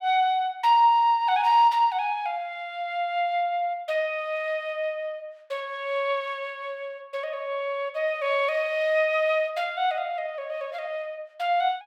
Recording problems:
none

